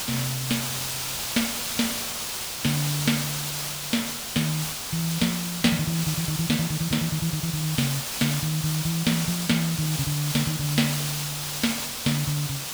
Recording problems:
background hiss; slope +1 dB per octave, SNR 2 dB

